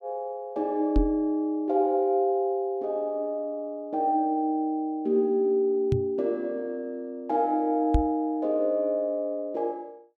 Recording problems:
microphone bump; at 1 s, at 6 s and at 8 s; peak +6 dB vs average level

